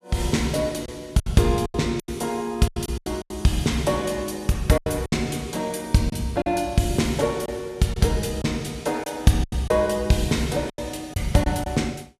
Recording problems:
lost packets; 9% of the sound replaced, filled with silence

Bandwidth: 14.5 kHz